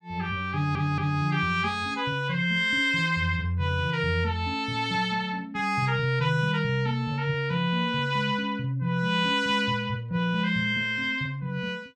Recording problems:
audio stuttering; at 0.5 s

